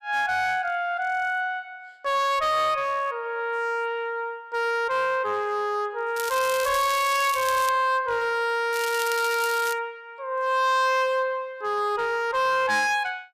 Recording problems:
distorted audio; hard clipping, signal-to-distortion ratio 10 dB
crackle; from 6 to 7.5 s and from 8.5 to 9.5 s; loose cable, SNR 11 dB

